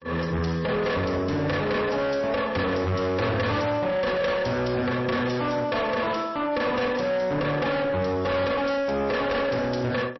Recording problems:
lossy codec; MP3, log-spectral distance 4 dB, nothing above 5.7 kHz
distorted audio; soft clipping, signal-to-distortion ratio 6 dB

